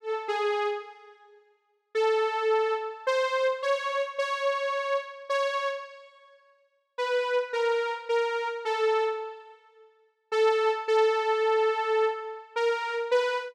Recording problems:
none

